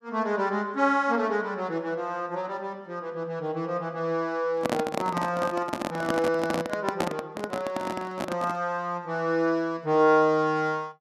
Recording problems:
handling noise; from 4.5 to 8.5 s; peak +4 dB vs average level

